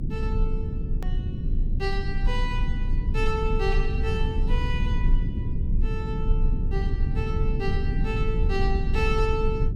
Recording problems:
rumble; below 80 Hz, strongest tone 28 Hz, SNR -5 dB
hard cut with a click; at 1 s

